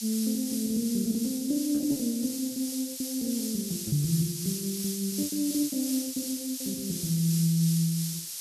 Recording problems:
background hiss; SNR 5 dB
lost packets; 8% of the sound replaced, filled with repeated pitch periods

